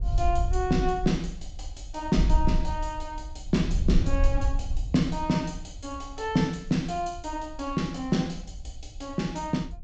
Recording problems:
treble cut off; nothing above 8 kHz
wind noise; below 58 Hz, SNR 3 dB

